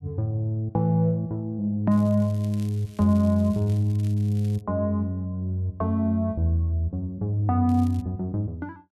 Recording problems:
crackle; from 2 to 4.5 s and at 7.5 s; loose cable, SNR 27 dB

